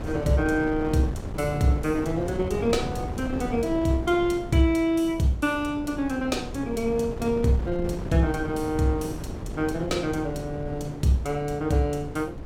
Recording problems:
wind on the microphone; below 360 Hz, SNR 9 dB

